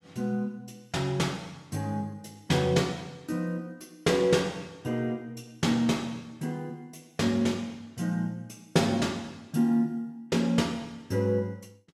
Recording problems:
none

